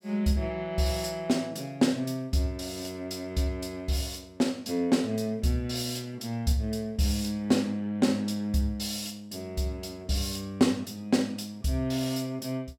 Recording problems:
none

